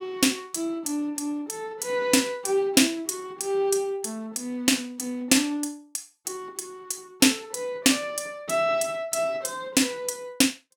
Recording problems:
none

